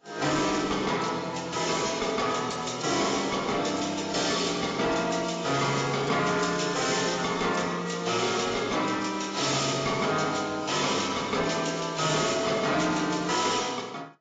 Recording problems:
lossy compression; AAC, log-spectral distance 9 dB, nothing above 7.6 kHz
distorted audio; hard clipping, uneven, signal-to-distortion ratio 11 dB

